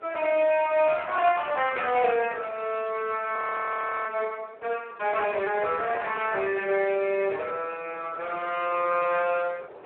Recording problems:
telephone audio; 340 Hz to 3.1 kHz, Speex
wind on the microphone; below 860 Hz, SNR 20 dB
frozen audio; at 3.5 s for 0.5 s

